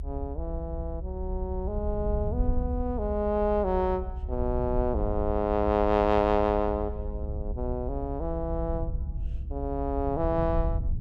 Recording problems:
rumble; below 70 Hz, SNR 5 dB

